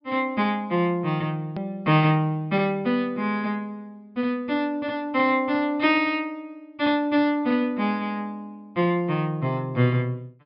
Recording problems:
low-pass filter; nothing above 5.3 kHz
hard cut with a click; at 1.5 s

